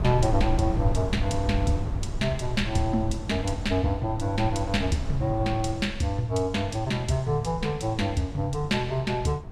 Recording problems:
wind noise; below 110 Hz, SNR 7 dB

